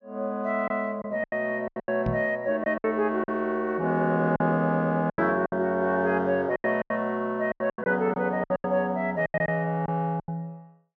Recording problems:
treble missing; nothing above 6.6 kHz
packet loss; 12% of the sound replaced, filled with silence
microphone bump; at 2 s; peak +1 dB vs average level

